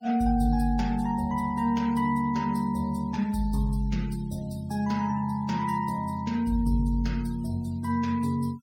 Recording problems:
noise reduction artefacts; signal-to-artefact ratio 22 dB

